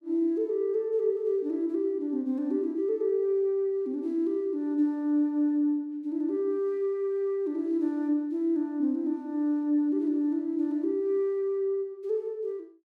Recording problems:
none

